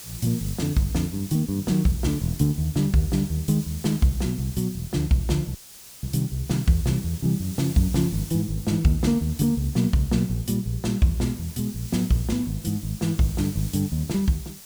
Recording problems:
background hiss; SNR 15 dB
audio cutting out; at 5.5 s

